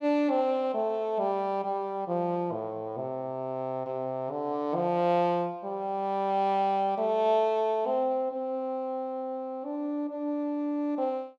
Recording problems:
none

